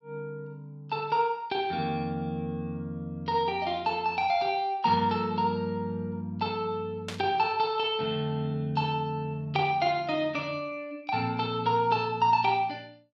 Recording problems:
burst of static; at 7 s; peak -4 dB vs average level

